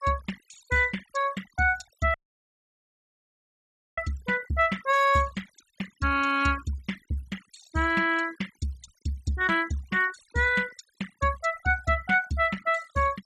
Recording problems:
noise reduction artefacts; signal-to-artefact ratio 19 dB
audio cutting out; at 2 s for 2 s

